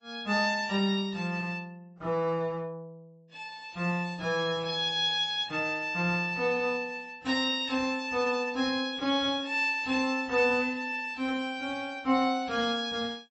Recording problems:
lossy codec; MP3, then AAC, log-spectral distance 2 dB, nothing above 8 kHz

